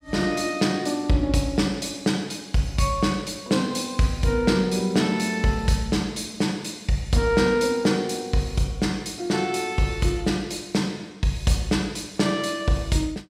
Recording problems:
none

